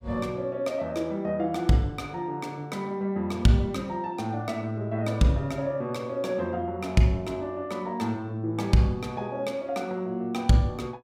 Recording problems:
none

